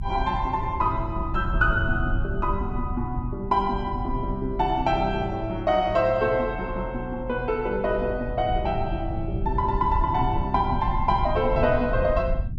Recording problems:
rumble; below 90 Hz, SNR 7 dB

